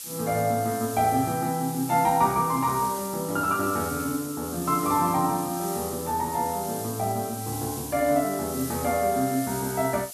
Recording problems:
background hiss; slope +3 dB per octave, SNR 10 dB

